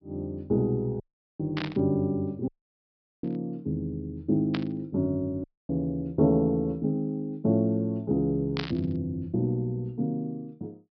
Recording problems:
treble missing; nothing above 5.5 kHz
audio cutting out; at 1 s, at 2.5 s for 1 s and at 5.5 s
static burst; 4 times, first at 1.5 s; peak -1 dB vs average level

